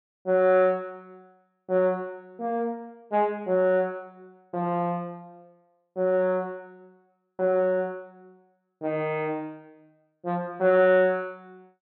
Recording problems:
treble missing; nothing above 4.1 kHz

